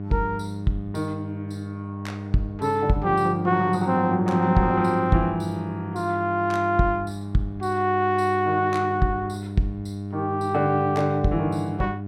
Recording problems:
hum; 50 Hz, harmonics up to 700 Hz, SNR 9 dB

